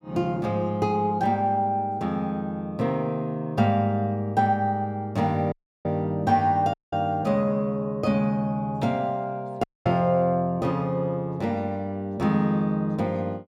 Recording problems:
audio cutting out; at 5.5 s, at 6.5 s and at 9.5 s

